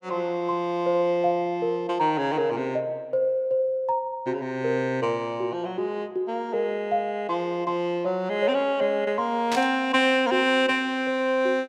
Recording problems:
burst of static; at 9.5 s; peak -1 dB vs average level

